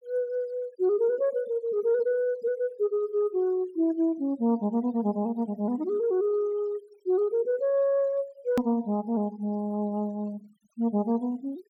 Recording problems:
noise reduction artefacts; signal-to-artefact ratio 27 dB
hard cut with a click; at 8.5 s

